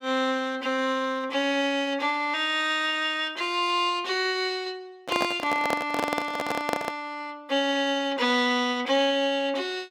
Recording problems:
microphone handling noise; from 5 to 7 s; peak +2 dB vs average level

